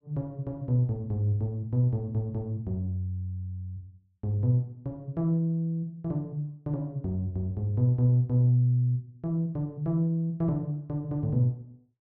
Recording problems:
none

